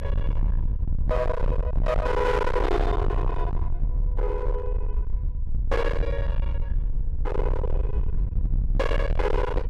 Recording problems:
distorted audio; hard clipping, signal-to-distortion ratio 6 dB
low-frequency rumble; below 72 Hz, SNR 0 dB

